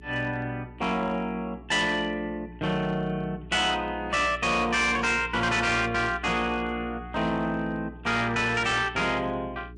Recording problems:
lossy compression; MP3, log-spectral distance 2 dB, nothing above 9 kHz
distorted audio; hard clipping, signal-to-distortion ratio 11 dB
mains hum; 60 Hz, harmonics up to 420 Hz, SNR 18 dB

